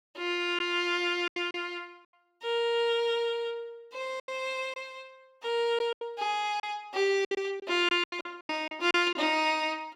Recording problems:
packet loss; 8% of the sound replaced, filled with silence

